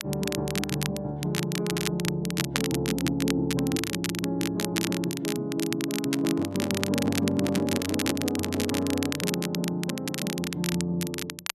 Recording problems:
crackle; vinyl, SNR 5 dB
microphone handling noise; from 6 to 9 s; peak +3 dB vs average level

